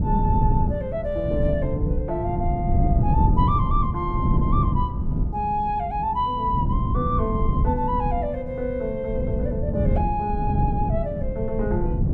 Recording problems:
wind on the microphone; below 150 Hz, SNR -1 dB

